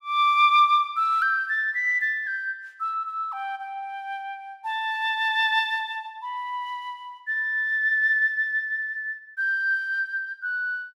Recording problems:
none

